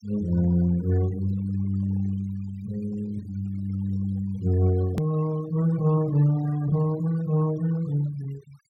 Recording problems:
noise reduction artefacts; signal-to-artefact ratio 22 dB
click at an edit; at 5 s

